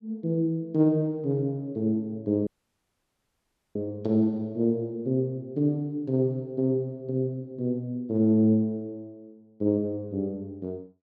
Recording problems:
audio cutting out; at 2.5 s for 1.5 s

